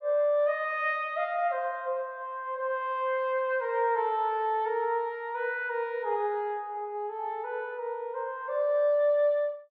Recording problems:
none

